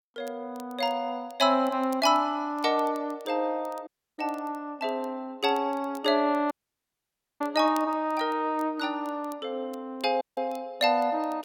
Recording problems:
crackling; vinyl, SNR 28 dB
audio cutting out; at 4 s, at 6.5 s for 1 s and at 10 s

